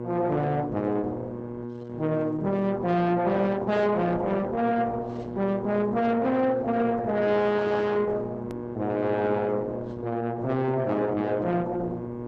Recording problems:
codec artefacts; Opus, log-spectral distance 2 dB
distorted audio; soft clipping, signal-to-distortion ratio 7 dB
hum; 60 Hz, harmonics up to 1.2 kHz, SNR 9 dB
hard cut with a click; at 8.5 s

